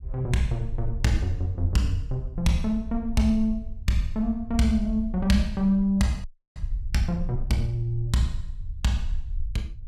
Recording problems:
low-frequency rumble; below 56 Hz, SNR 10 dB
audio freezing; at 6 s

